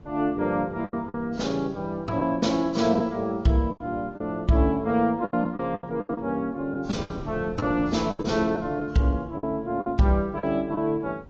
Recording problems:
lossy compression; AAC, log-spectral distance 2 dB
wind on the microphone; below 300 Hz, SNR 19 dB
packet loss; 9% of the sound replaced, filled with the last packet

